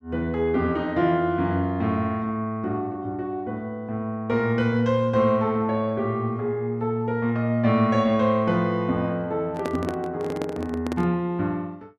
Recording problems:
handling noise; from 9.5 to 11 s; peak -1 dB vs average level

